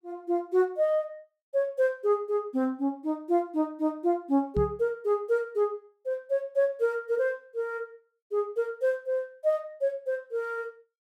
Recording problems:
knock on the microphone; at 4.5 s; peak +2 dB vs average level

